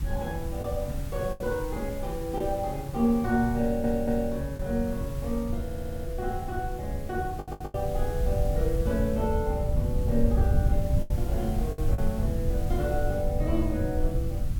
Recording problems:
background hiss; slope -2 dB per octave, SNR 17 dB
rumble; below 92 Hz, SNR 1 dB
lost packets; 3% of the sound replaced, filled with the last packet
stutter; at 3.5 s, at 5.5 s and at 7.5 s

